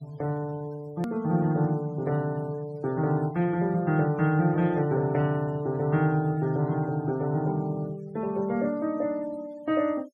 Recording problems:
denoising artefacts; signal-to-artefact ratio 24 dB
hard cut with a click; at 1 s

